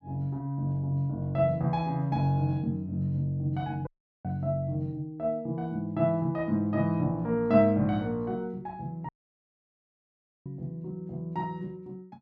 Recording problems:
dropout; at 4 s and at 9 s for 1.5 s

